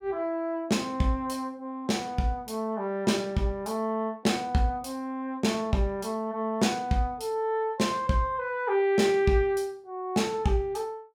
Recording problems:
none

